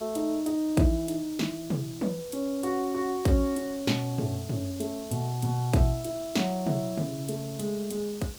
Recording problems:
hiss; SNR 15 dB

